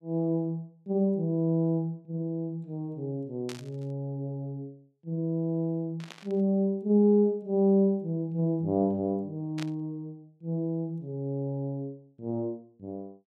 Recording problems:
burst of static; at 3.5 s, at 6 s and at 9.5 s; peak -7 dB vs average level

